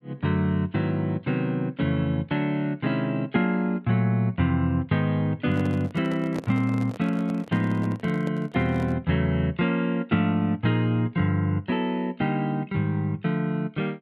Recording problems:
microphone handling noise; from 5.5 to 9 s; peak -5 dB vs average level

